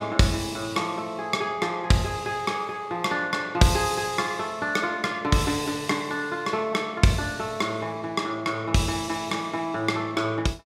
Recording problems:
none

